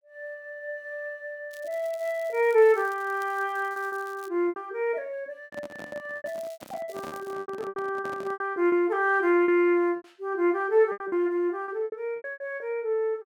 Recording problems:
packet loss; 11% of the sound replaced, filled with repeated pitch periods
crackle; from 1.5 to 4.5 s and from 6.5 to 7.5 s; loose cable, SNR 26 dB
handling noise; from 5.5 to 8.5 s; peak -9 dB vs average level

